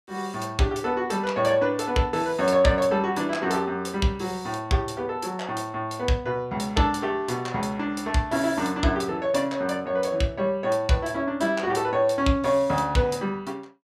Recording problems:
none

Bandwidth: 15 kHz